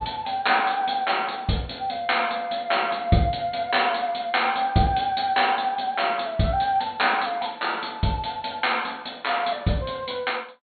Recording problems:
treble missing; nothing above 4.4 kHz

